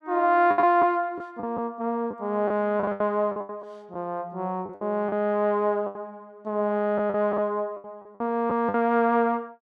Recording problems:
lost packets; 10% of the sound replaced, filled with the last packet

